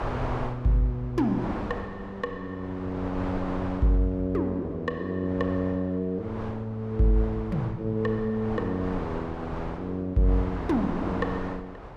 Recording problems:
wind on the microphone; below 970 Hz, SNR 9 dB

